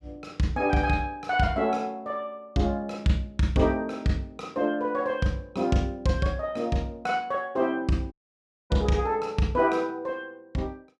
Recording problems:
audio cutting out; at 8 s for 0.5 s

